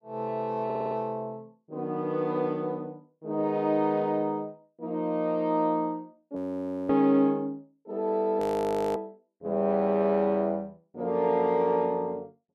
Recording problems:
stutter; at 0.5 s
frozen audio; at 6.5 s for 0.5 s and at 8.5 s for 0.5 s

